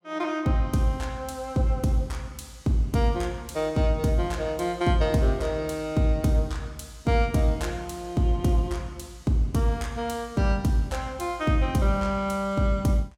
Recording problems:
none

